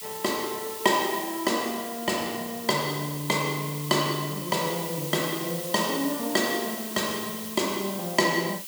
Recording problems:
background hiss; slope +6 dB per octave, SNR 8 dB

